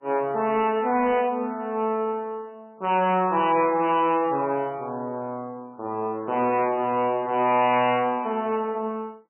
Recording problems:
lossy compression; MP3, log-spectral distance 3 dB, nothing above 2.4 kHz
distorted audio; hard clipping, signal-to-distortion ratio 11 dB

